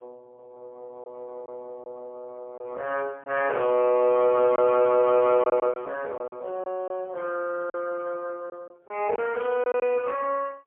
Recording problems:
phone line; 280 Hz to 3.1 kHz, AMR-NB, then MP3
lost packets; 5% of the sound replaced, filled with silence

